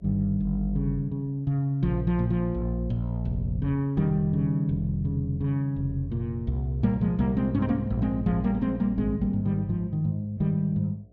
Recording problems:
hum; 60 Hz, harmonics up to 720 Hz, SNR 31 dB

